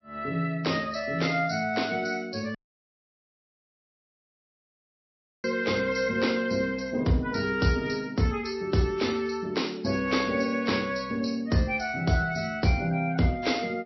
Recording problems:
lossy codec; MP3, log-spectral distance 5 dB, nothing above 5.7 kHz
audio cutting out; at 2.5 s for 3 s

